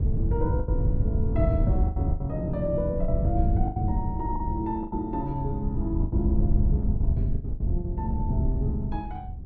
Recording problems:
wind on the microphone; below 100 Hz, SNR -3 dB
packet loss; 9% of the sound replaced, filled with the last packet

